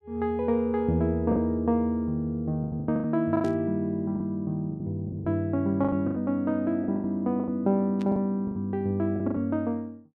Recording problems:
lost packets; 12% of the sound replaced, filled with the last packet
static burst; at 3.5 s and at 8 s; peak -15 dB vs average level

